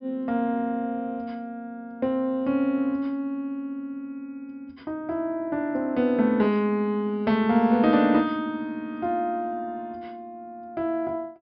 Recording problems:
treble cut off; nothing above 5.4 kHz

